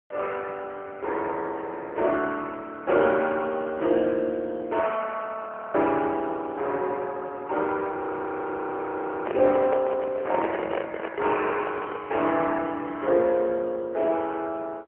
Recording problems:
phone line; 320 Hz to 3.1 kHz, AMR-NB
audio freezing; at 5.5 s and at 8 s for 1.5 s
handling noise; from 9.5 to 12 s; peak 0 dB vs average level

